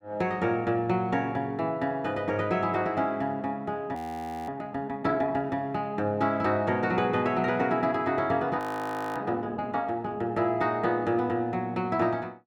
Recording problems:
audio freezing; at 4 s for 0.5 s and at 8.5 s for 0.5 s

